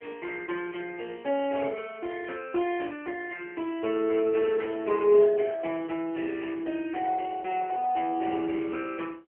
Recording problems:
phone line; 280 Hz to 3 kHz, AMR-NB

